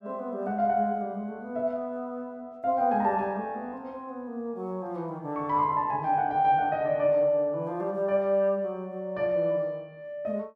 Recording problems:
none

